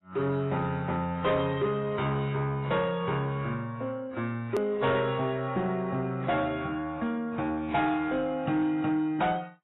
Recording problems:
lossy codec; AAC, log-spectral distance 2 dB, nothing above 3.2 kHz
distorted audio; soft clipping, signal-to-distortion ratio 12 dB
click at an edit; at 4.5 s

